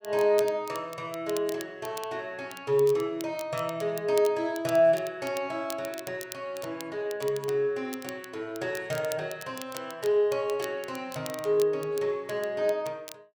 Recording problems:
crackle; vinyl, SNR 16 dB

